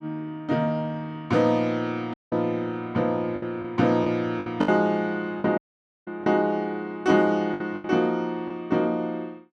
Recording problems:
packet loss; 6% of the sound replaced, filled with the last packet
dropout; at 2 s and at 5.5 s

